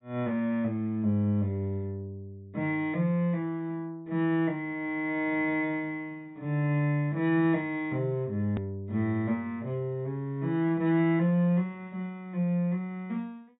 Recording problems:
treble missing; nothing above 4 kHz
click at an edit; at 8.5 s

